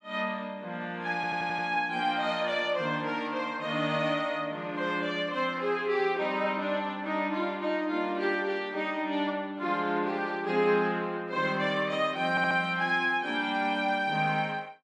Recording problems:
stutter; at 1 s and at 12 s

